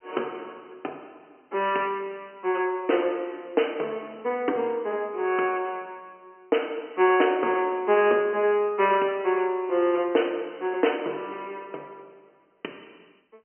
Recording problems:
telephone audio; 300 Hz to 3.1 kHz, G.711

